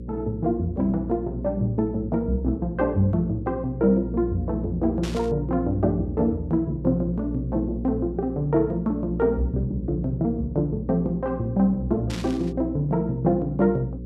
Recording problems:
mains hum; 60 Hz, harmonics up to 540 Hz, SNR 9 dB
burst of static; at 5 s and at 12 s; peak -7 dB vs average level

